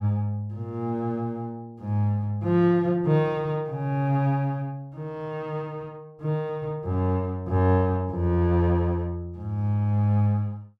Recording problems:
none

